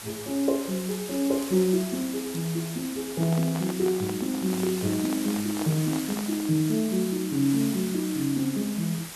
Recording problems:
hiss; slope -1 dB per octave, SNR 10 dB
crackle; from 1 to 2.5 s and from 4.5 to 7 s; loose cable, SNR 23 dB
microphone handling noise; from 3 to 6.5 s; peak -4 dB vs average level

